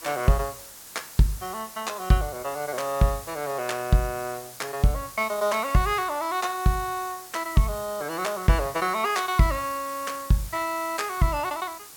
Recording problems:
background hiss; slope 0 dB per octave, SNR 14 dB

